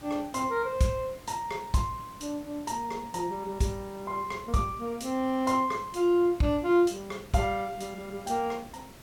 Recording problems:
hiss; slope -4 dB per octave, SNR 19 dB

